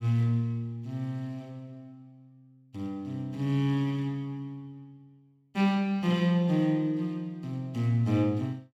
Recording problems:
none

